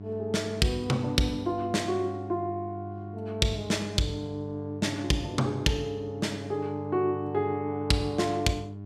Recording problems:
mains hum; 50 Hz, harmonics up to 700 Hz, SNR 11 dB

